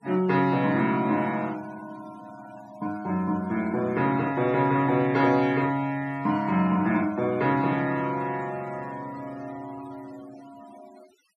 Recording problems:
noise reduction artefacts; signal-to-artefact ratio 24 dB

